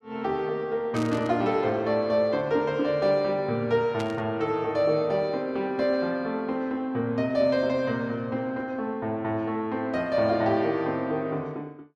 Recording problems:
burst of static; at 1 s and at 4 s; peak -8 dB vs average level

